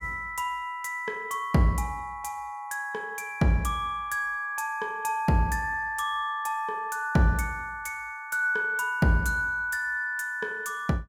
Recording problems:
none

